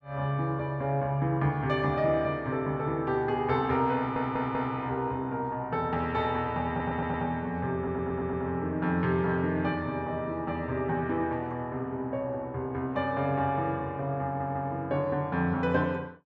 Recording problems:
audio stuttering; 4 times, first at 4 s

